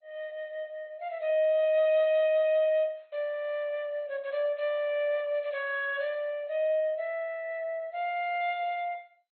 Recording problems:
lossy codec; MP2, log-spectral distance 2 dB, nothing above 3.6 kHz

